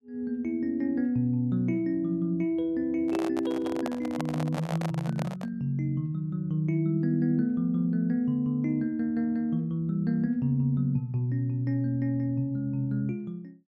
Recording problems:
microphone handling noise; from 3 to 5.5 s; peak -2 dB vs average level

